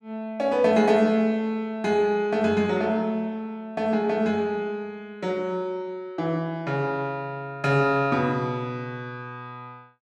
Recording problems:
none

